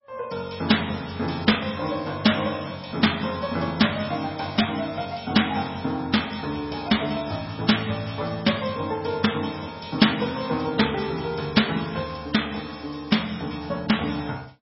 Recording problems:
codec artefacts; MP3, log-spectral distance 7 dB, nothing above 5.5 kHz

